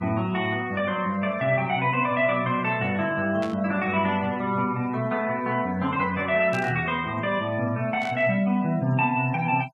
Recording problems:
noise reduction artefacts; signal-to-artefact ratio 22 dB
static burst; at 3.5 s, at 6.5 s and at 8 s; peak -10 dB vs average level

